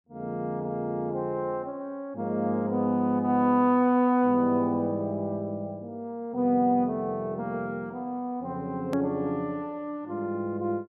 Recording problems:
edit click; at 9 s

